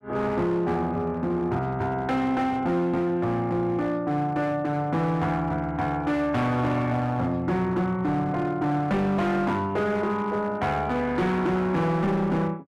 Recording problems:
distortion; hard clipping, signal-to-distortion ratio 10 dB

